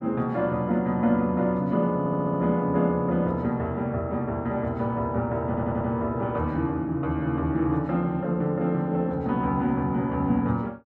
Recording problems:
stutter; at 2 s and at 5.5 s

